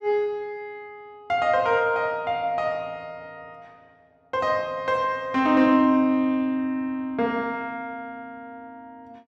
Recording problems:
none

